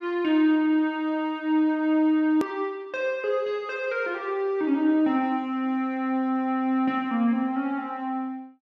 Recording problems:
edit click; at 2.5 s

